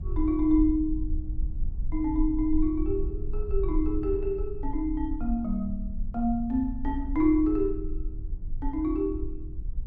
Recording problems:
rumble; below 52 Hz, strongest tone 22 Hz, SNR 7 dB

